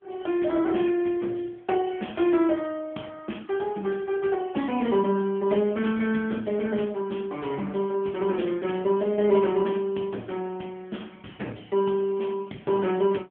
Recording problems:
phone line; 150 Hz to 3.4 kHz, AMR-NB

